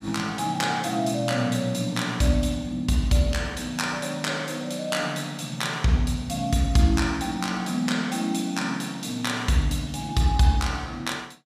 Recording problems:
none

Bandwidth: 15 kHz